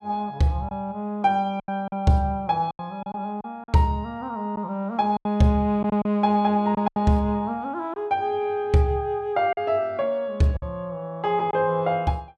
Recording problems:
packet loss; 6% of the sound replaced, filled with silence

